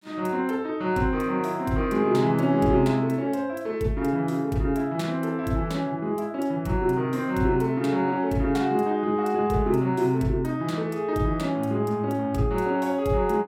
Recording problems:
none

